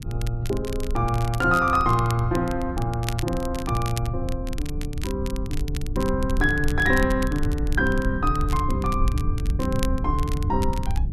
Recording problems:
rumble; below 88 Hz, SNR 4 dB
crackle; vinyl, SNR 15 dB

